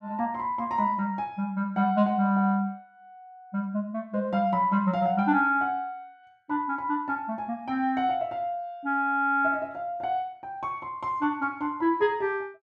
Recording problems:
none

